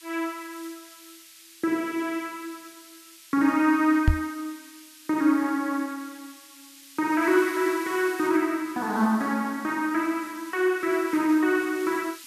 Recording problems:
background hiss; SNR 20 dB
microphone thump; at 4 s; peak +8 dB vs average level

